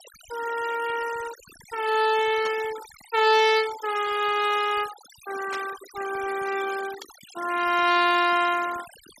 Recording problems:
denoising artefacts; signal-to-artefact ratio 14 dB
static burst; at 2.5 s, at 5.5 s and at 7 s; peak -9 dB vs average level

